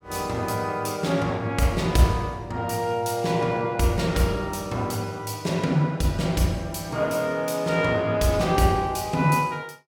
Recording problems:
none

